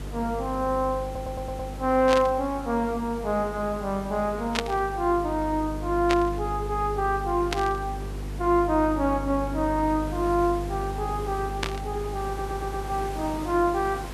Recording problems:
electrical hum; 50 Hz, harmonics up to 500 Hz, SNR 10 dB
hiss; slope -5 dB per octave, SNR 16 dB
stutter; at 1 s and at 12 s
static burst; 5 times, first at 2 s; peak +4 dB vs average level

